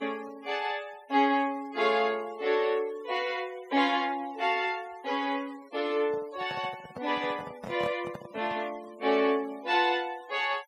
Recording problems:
denoising artefacts; signal-to-artefact ratio 22 dB
handling noise; from 6 to 8.5 s; peak -5 dB vs average level

